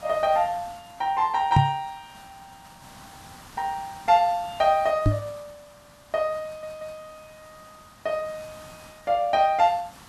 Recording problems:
background hiss; SNR 23 dB
knock on the microphone; at 1.5 s and at 5 s; peak +8 dB vs average level
stutter; at 6.5 s

